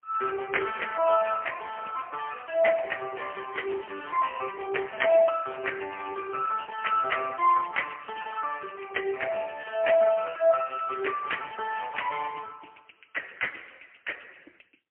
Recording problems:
phone line; 260 Hz to 3.1 kHz, AMR-NB, then MP3

